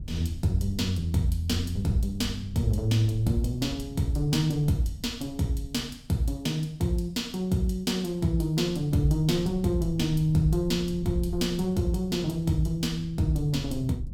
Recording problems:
wind noise; below 100 Hz, SNR 14 dB

